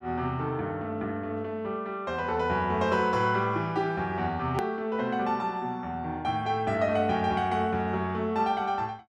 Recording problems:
click at an edit; at 4.5 s

